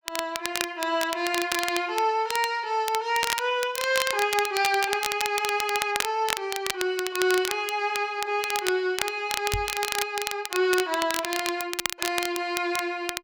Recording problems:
crackle; vinyl, SNR 5 dB
microphone thump; at 9.5 s; peak -1 dB vs average level

